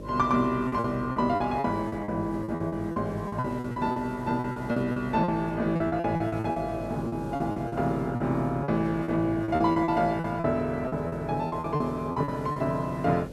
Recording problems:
electrical hum; 50 Hz, harmonics up to 600 Hz, SNR 14 dB
background hiss; slope -4 dB per octave, SNR 26 dB
lost packets; 15% of the sound replaced, filled with repeated pitch periods

